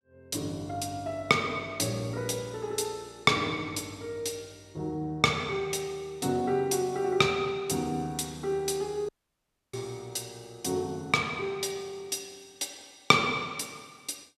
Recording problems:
audio cutting out; at 9 s for 0.5 s

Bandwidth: 14 kHz